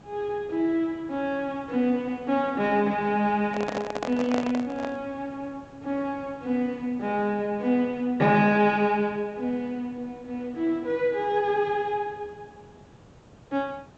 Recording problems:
low-pass filter; nothing above 8 kHz
background hiss; slope -7 dB per octave, SNR 24 dB
handling noise; from 3.5 to 5 s; peak -1 dB vs average level

